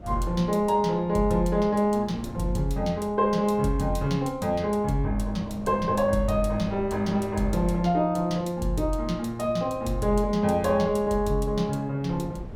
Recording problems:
wind on the microphone; below 260 Hz, SNR 18 dB

